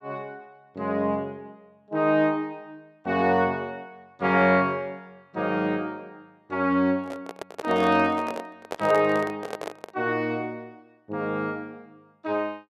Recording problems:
handling noise; from 7 to 10 s; peak -3 dB vs average level

